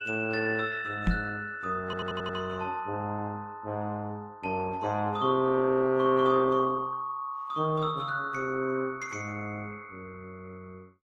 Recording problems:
codec artefacts; AAC, then Opus, log-spectral distance 3 dB, nothing above 13.7 kHz
microphone bump; at 1 s; peak +6 dB vs average level
audio stuttering; at 2 s

